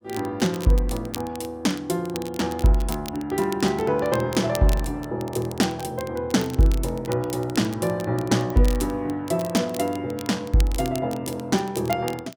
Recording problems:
crackling; vinyl, SNR 17 dB

